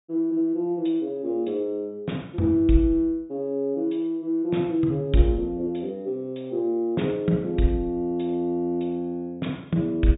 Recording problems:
treble cut off; nothing above 4 kHz

